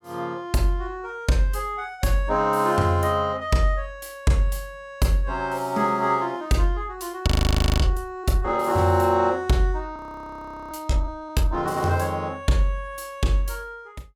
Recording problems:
frozen audio; at 7.5 s for 0.5 s and at 10 s for 1 s

